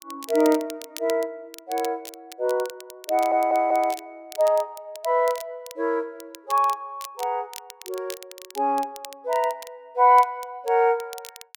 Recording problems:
crackle; vinyl, SNR 18 dB
audio stuttering; at 3 s

